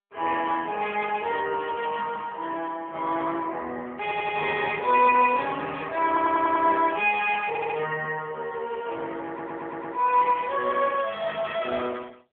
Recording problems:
phone line; 340 Hz to 3.3 kHz, AMR-NB
audio stuttering; 4 times, first at 4 s

